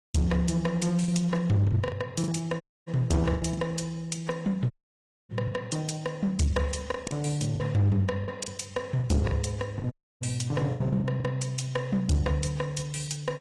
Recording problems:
codec artefacts; AAC, log-spectral distance 2 dB
distortion; hard clipping, uneven, signal-to-distortion ratio 10 dB
lost packets; 7% of the sound replaced, filled with the last packet
audio cutting out; at 2.5 s, at 4.5 s for 0.5 s and at 10 s

